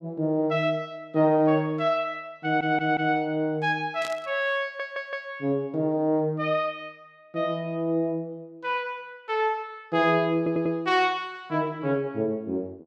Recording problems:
audio stuttering; at 2.5 s, at 4.5 s and at 10 s
static burst; at 4 s; peak -7 dB vs average level

